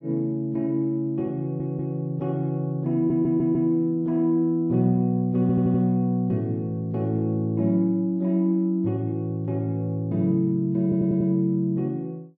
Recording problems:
audio stuttering; 4 times, first at 1.5 s

